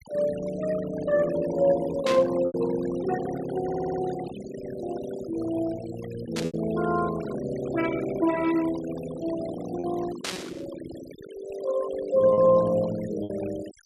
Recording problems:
denoising artefacts; signal-to-artefact ratio 15 dB
lost packets; 2% of the sound replaced, filled with repeated pitch periods
static burst; at 2 s, at 6.5 s and at 10 s; peak 0 dB vs average level
audio stuttering; at 3.5 s

